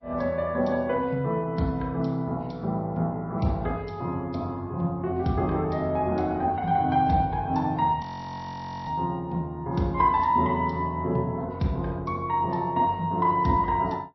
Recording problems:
lossy codec; MP3, log-spectral distance 2 dB, nothing above 5.7 kHz
audio freezing; at 8 s for 1 s

